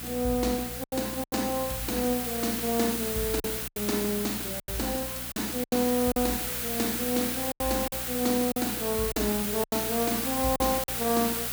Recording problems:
hum; 60 Hz, harmonics up to 540 Hz, SNR 15 dB
hiss; slope 0 dB per octave, SNR 1 dB
lost packets; 8% of the sound replaced, filled with silence

